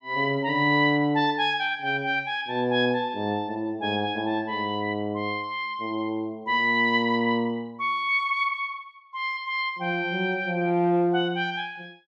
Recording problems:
treble missing; nothing above 7.9 kHz

